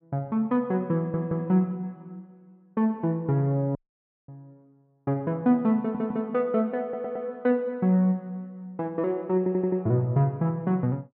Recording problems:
audio stuttering; 4 times, first at 1 s
dropout; at 4 s for 0.5 s

